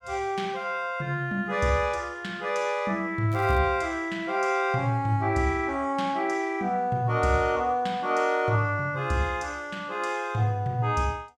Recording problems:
crackle; at 3.5 s; loose cable, SNR 25 dB

